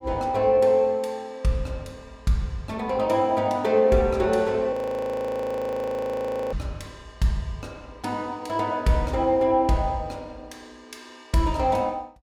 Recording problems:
frozen audio; at 4.5 s for 2 s

